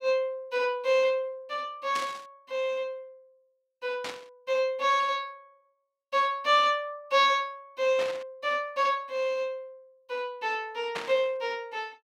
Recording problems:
burst of static; 4 times, first at 2 s; peak -3 dB vs average level

